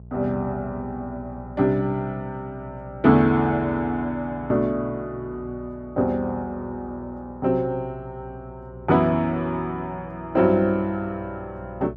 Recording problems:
electrical hum; 60 Hz, harmonics up to 600 Hz, SNR 18 dB

